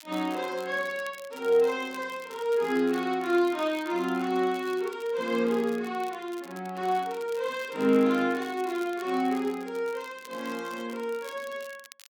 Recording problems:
crackling; vinyl, SNR 22 dB

